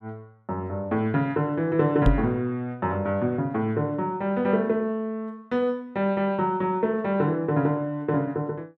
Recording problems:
microphone bump; at 2 s; peak +7 dB vs average level

